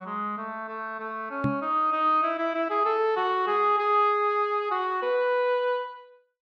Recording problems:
microphone bump; at 1.5 s; peak +1 dB vs average level

